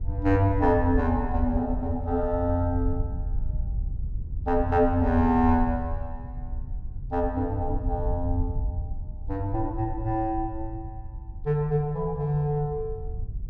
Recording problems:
wind noise; below 78 Hz, SNR 7 dB

